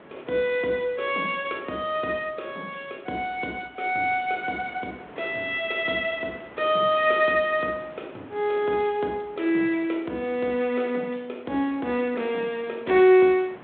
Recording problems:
phone line; 190 Hz to 3.7 kHz, G.726
wind on the microphone; below 1.3 kHz, SNR 22 dB

